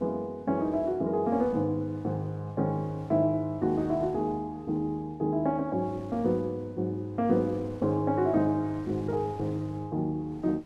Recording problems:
wind noise; below 640 Hz, SNR 22 dB

